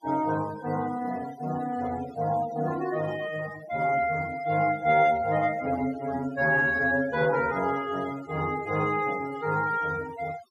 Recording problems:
noise reduction artefacts; signal-to-artefact ratio 17 dB

